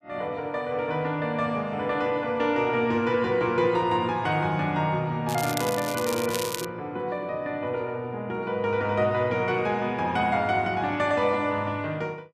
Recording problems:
crackle; from 5.5 to 6.5 s; loose cable, SNR 8 dB

